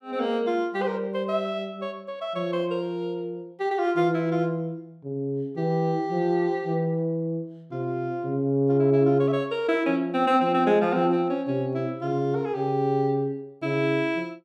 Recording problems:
none

